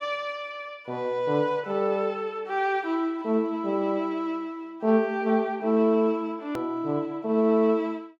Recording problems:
click at an edit; at 6.5 s

